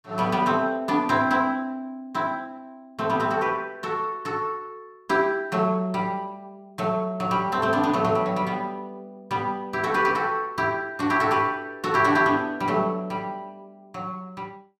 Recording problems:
none

